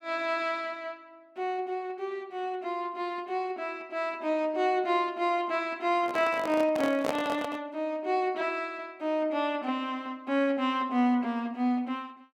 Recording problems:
handling noise; from 6 to 7.5 s; peak +2 dB vs average level

